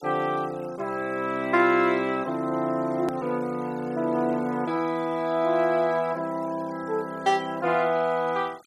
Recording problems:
denoising artefacts; signal-to-artefact ratio 24 dB
edit click; at 3 s

